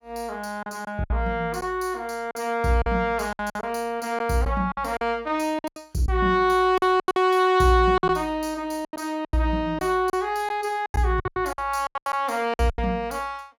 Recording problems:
packet loss; 12% of the sound replaced, filled with silence

